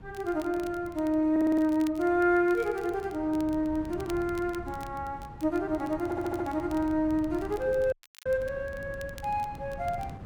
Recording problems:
wind noise; below 210 Hz, SNR 16 dB
crackling; vinyl, SNR 25 dB
audio stuttering; at 1.5 s and at 6 s
dropout; at 8 s

